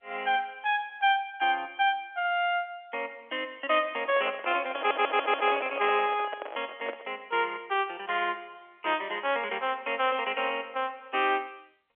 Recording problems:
phone line; 320 Hz to 3.4 kHz, G.711
handling noise; from 4 to 7 s; peak -4 dB vs average level
stutter; at 5 s

